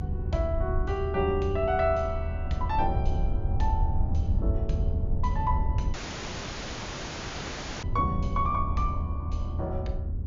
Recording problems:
treble missing; nothing above 7.1 kHz
hum; 60 Hz, harmonics up to 720 Hz, SNR 20 dB
rumble; below 84 Hz, SNR 0 dB
dropout; at 6 s for 2 s

